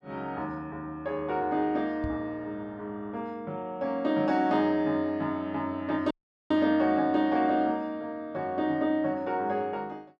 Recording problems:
knock on the microphone; at 2 s; peak -4 dB vs average level
audio cutting out; at 6 s

